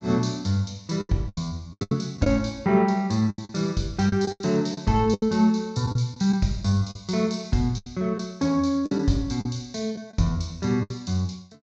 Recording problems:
treble cut off; nothing above 7.7 kHz
lost packets; 10% of the sound replaced, filled with the last packet

